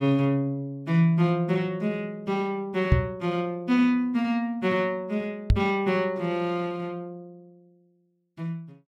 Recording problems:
microphone thump; at 3 s and at 5.5 s; peak +9 dB vs average level

